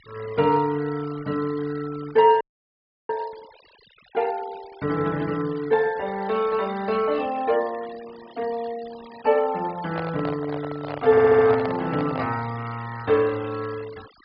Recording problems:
treble missing; nothing above 5 kHz
denoising artefacts; signal-to-artefact ratio 21 dB
frozen audio; at 2.5 s for 0.5 s
microphone handling noise; from 10 to 12 s; peak -3 dB vs average level
stutter; at 11 s

